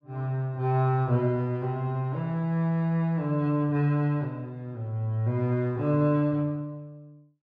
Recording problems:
none

